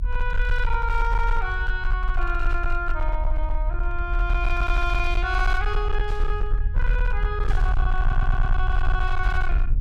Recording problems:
distortion; hard clipping, signal-to-distortion ratio 11 dB
low-frequency rumble; below 44 Hz, strongest tone 22 Hz, SNR -2 dB
static burst; at 2.5 s, at 6 s and at 7.5 s; peak -13 dB vs average level
audio stuttering; at 8 s

